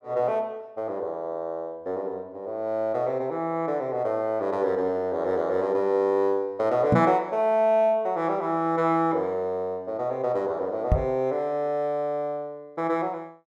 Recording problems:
microphone thump; at 7 s and at 11 s; peak +8 dB vs average level

